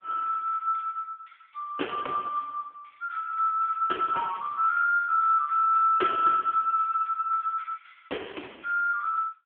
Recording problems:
telephone audio; 240 Hz to 3.2 kHz, AMR-NB

